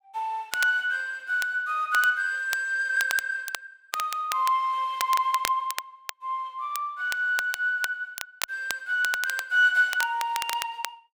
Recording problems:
crackle; vinyl, SNR 10 dB

